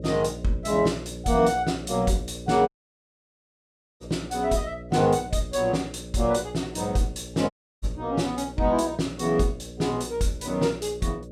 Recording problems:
electrical hum; 60 Hz, harmonics up to 600 Hz, SNR 15 dB
dropout; at 2.5 s for 1.5 s and at 7.5 s

